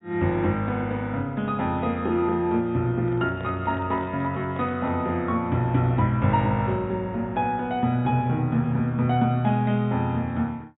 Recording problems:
low-pass filter; nothing above 4 kHz
handling noise; from 3 to 5 s; peak -11 dB vs average level

